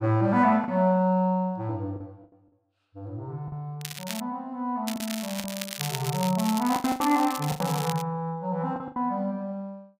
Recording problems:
lost packets; 7% of the sound replaced, filled with the last packet
crackle; at 4 s and from 5 to 8 s; loose cable, SNR 9 dB

